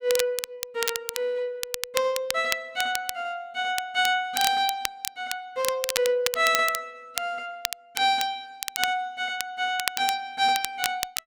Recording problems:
crackle; vinyl, SNR 5 dB

